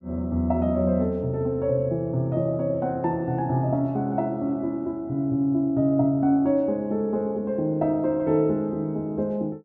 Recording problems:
none

